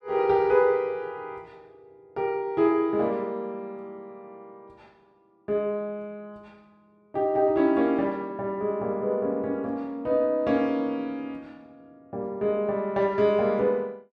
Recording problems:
none

